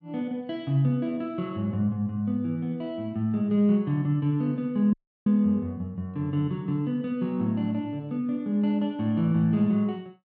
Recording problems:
audio cutting out; at 5 s

